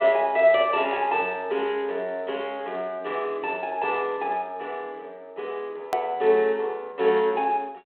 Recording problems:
telephone audio; 300 Hz to 3.7 kHz, G.726
click at an edit; at 6 s

